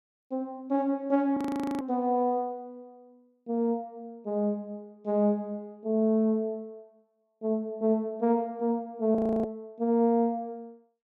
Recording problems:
frozen audio; at 1.5 s and at 9 s

